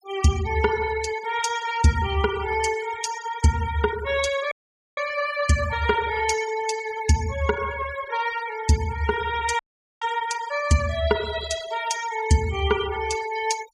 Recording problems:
denoising artefacts; signal-to-artefact ratio 13 dB
audio cutting out; at 4.5 s and at 9.5 s

